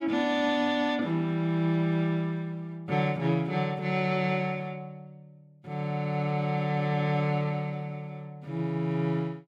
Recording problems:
none

